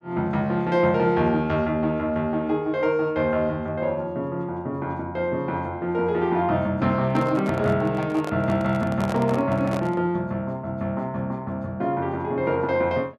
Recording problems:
microphone handling noise; from 7 to 10 s; peak -3 dB vs average level

